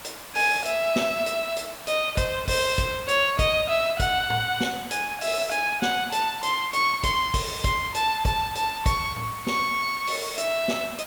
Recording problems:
hiss; SNR 15 dB

